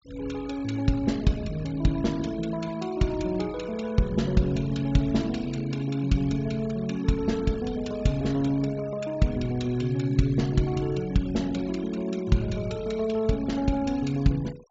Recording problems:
low-pass filter; nothing above 7.5 kHz
noise reduction artefacts; signal-to-artefact ratio 22 dB

